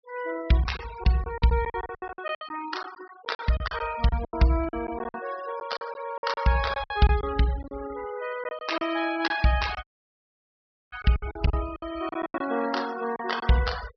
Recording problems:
low-pass filter; nothing above 5.5 kHz
noise reduction artefacts; signal-to-artefact ratio 14 dB
packet loss; 13% of the sound replaced, filled with silence
dropout; at 10 s for 1 s

